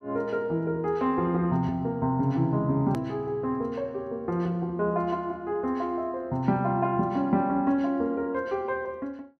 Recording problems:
hard cut with a click; at 3 s

